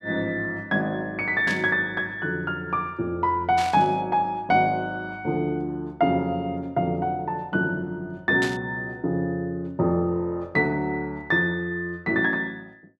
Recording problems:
burst of static; at 1.5 s, at 3.5 s and at 8.5 s; peak -4 dB vs average level

